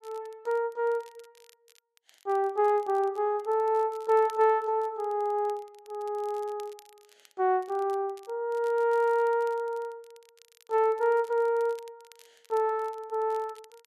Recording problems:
crackle; vinyl, SNR 30 dB

